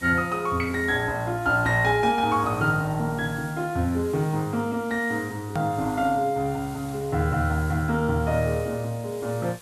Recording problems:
hiss; slope -2 dB per octave, SNR 21 dB
edit click; at 5.5 s

